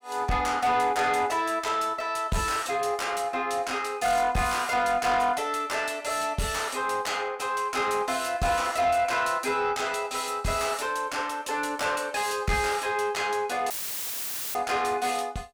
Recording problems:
distortion; soft clipping, signal-to-distortion ratio 11 dB
dropout; at 14 s for 1 s; filled with static

